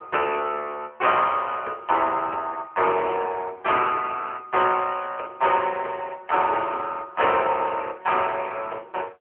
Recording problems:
phone line; 340 Hz to 3.1 kHz, AMR-NB

